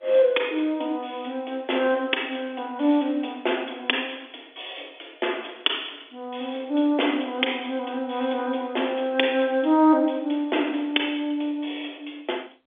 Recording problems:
phone line; 260 Hz to 3.6 kHz, G.711

